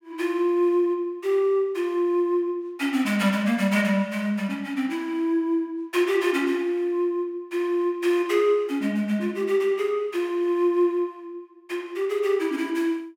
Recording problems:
none

